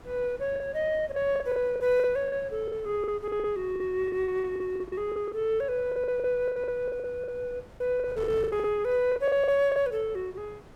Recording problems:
wind noise; below 660 Hz, SNR 21 dB
lost packets; 15% of the sound replaced, filled with the last packet

